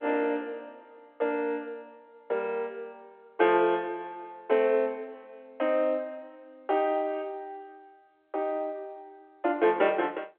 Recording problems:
telephone audio; 320 Hz to 3.5 kHz, G.711

